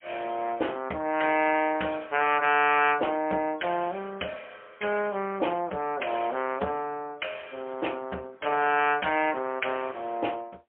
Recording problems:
phone line; 280 Hz to 3.1 kHz, AMR-NB, then MP3

